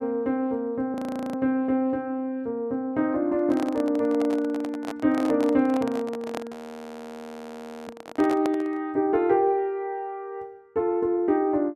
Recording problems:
frozen audio; at 1 s and at 6.5 s for 1.5 s
handling noise; from 3.5 to 9 s; peak -2 dB vs average level

